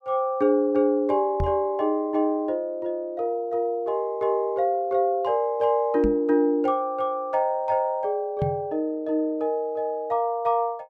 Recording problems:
knock on the microphone; at 1.5 s, at 6 s and at 8.5 s; peak +1 dB vs average level

